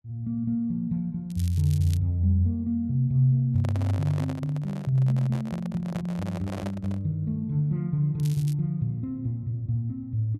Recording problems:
crackling; at 1.5 s and at 8 s; loose cable, SNR 20 dB
microphone handling noise; from 3.5 to 7 s; peak -6 dB vs average level

